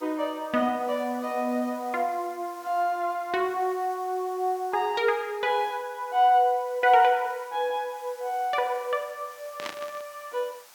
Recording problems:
background hiss; SNR 24 dB
burst of static; at 9.5 s; peak -4 dB vs average level

